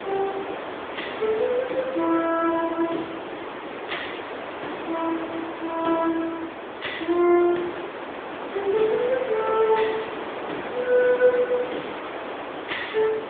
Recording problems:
phone line; 220 Hz to 3.6 kHz, AMR-NB
wind on the microphone; below 1.6 kHz, SNR 8 dB

